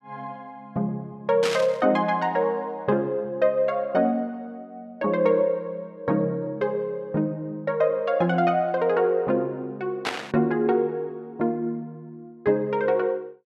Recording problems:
burst of static; at 1.5 s and at 10 s; peak +1 dB vs average level

